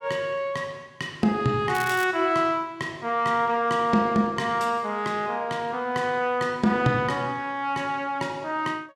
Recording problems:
crackling; at 2 s; loose cable, SNR 14 dB

